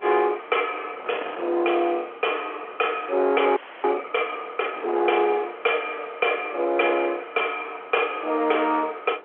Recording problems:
phone line; 320 Hz to 3.3 kHz, G.711
distorted audio; soft clipping, signal-to-distortion ratio 12 dB
wind noise; below 1.2 kHz, SNR 18 dB
frozen audio; at 3.5 s

